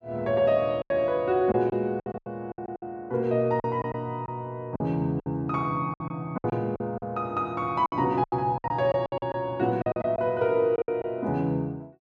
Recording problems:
lost packets; 12% of the sound replaced, filled with silence

